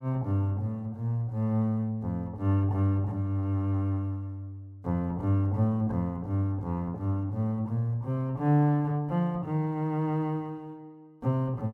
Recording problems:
none

